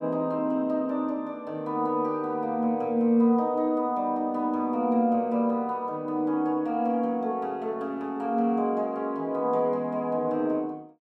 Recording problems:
none

